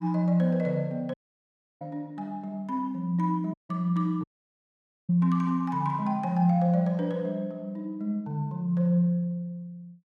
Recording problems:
dropout; at 1 s for 0.5 s, at 3.5 s and at 4 s for 1 s

